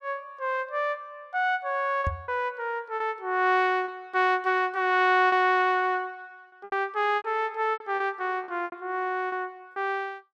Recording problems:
packet loss; 7% of the sound replaced, filled with repeated pitch periods
microphone thump; at 2 s; peak 0 dB vs average level

